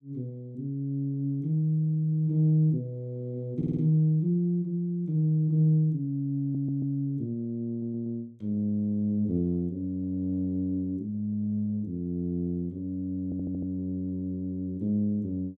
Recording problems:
audio stuttering; 4 times, first at 3.5 s

